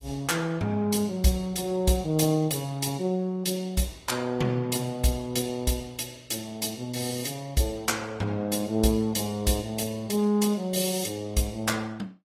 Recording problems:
lossy codec; AAC, log-spectral distance 4 dB, nothing above 14.3 kHz

